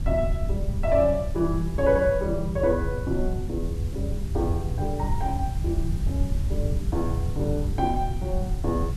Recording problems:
background hiss; slope -1 dB per octave, SNR 21 dB
wind on the microphone; below 100 Hz, SNR 2 dB

